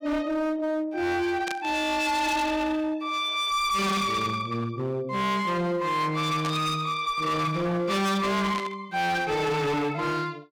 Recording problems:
distortion; hard clipping, signal-to-distortion ratio 7 dB
static burst; at 1.5 s, at 6.5 s and at 8.5 s; peak -4 dB vs average level

